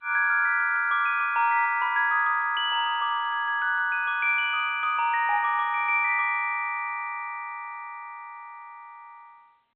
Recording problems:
phone line; 300 Hz to 3.5 kHz, G.711

